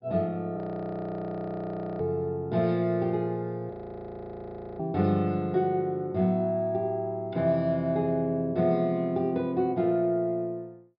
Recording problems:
low-pass filter; nothing above 5.5 kHz
audio freezing; at 0.5 s for 1.5 s and at 3.5 s for 1 s

